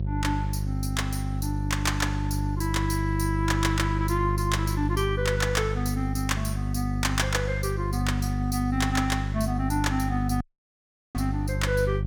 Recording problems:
hum; 50 Hz, harmonics up to 400 Hz, SNR 0 dB
audio cutting out; at 10 s for 0.5 s

